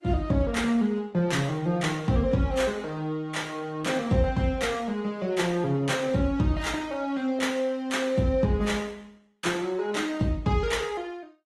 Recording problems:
lossy compression; AAC, then Opus, log-spectral distance 3 dB

